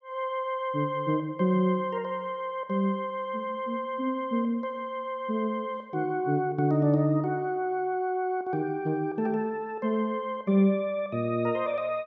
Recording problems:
none

